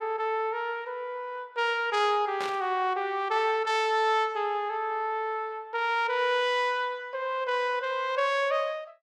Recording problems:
static burst; at 2.5 s; peak -5 dB vs average level

